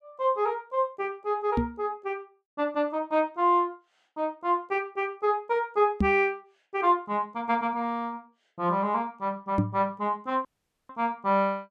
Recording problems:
knock on the microphone; at 1.5 s, at 6 s and at 9.5 s; peak +6 dB vs average level
audio cutting out; at 10 s

